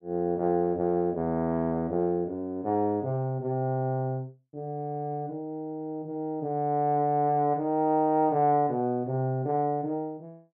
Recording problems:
none

